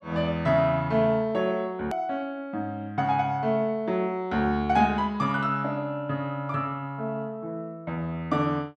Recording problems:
edit click; at 2 s

